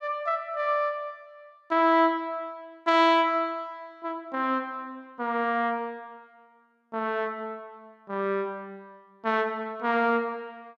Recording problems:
none

